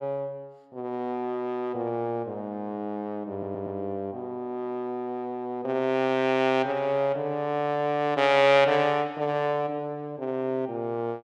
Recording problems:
audio stuttering; at 3.5 s

